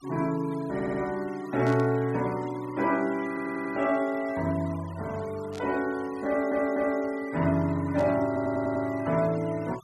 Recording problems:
denoising artefacts; signal-to-artefact ratio 20 dB
audio stuttering; 4 times, first at 0.5 s
static burst; at 1.5 s, at 5.5 s and at 8 s; peak -13 dB vs average level

